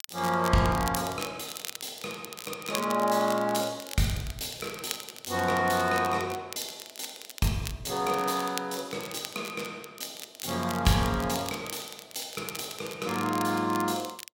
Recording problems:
crackle; vinyl, SNR 11 dB

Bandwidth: 16.5 kHz